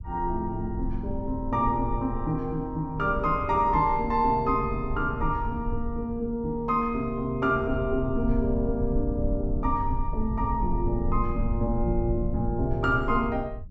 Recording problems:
rumble; below 74 Hz, SNR 7 dB

